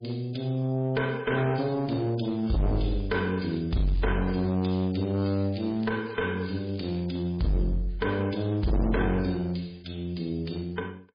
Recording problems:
lossy compression; MP3, log-spectral distance 4 dB, nothing above 11.3 kHz
distorted audio; hard clipping, uneven, signal-to-distortion ratio 7 dB
crackling; from 3 to 7 s; loose cable, SNR 25 dB

